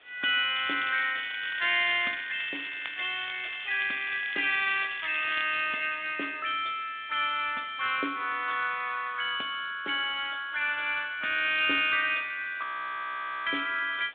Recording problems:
telephone audio; 220 Hz to 3.7 kHz, G.726
background hiss; SNR 27 dB
crackling; from 0.5 to 5.5 s; loose cable, SNR 12 dB
frozen audio; at 13 s for 1 s

